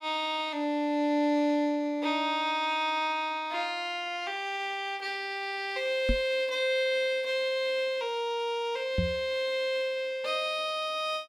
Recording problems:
microphone bump; at 6 s and at 9 s; peak +4 dB vs average level

